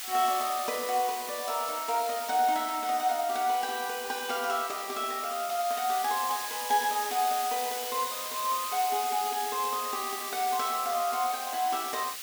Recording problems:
hiss; slope +3 dB per octave, SNR 6 dB

